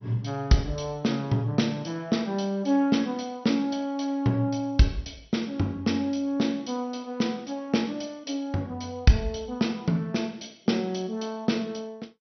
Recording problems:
lossy compression; MP2, log-spectral distance 4 dB, nothing above 6 kHz

